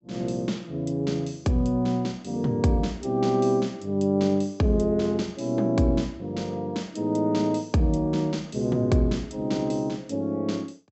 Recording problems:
low-pass filter; nothing above 7.9 kHz

